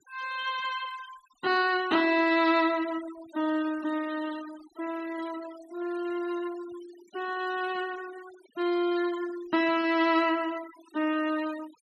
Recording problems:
noise reduction artefacts; signal-to-artefact ratio 18 dB

